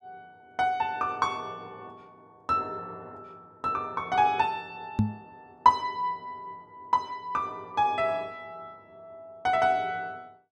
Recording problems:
microphone bump; at 5 s; peak +7 dB vs average level

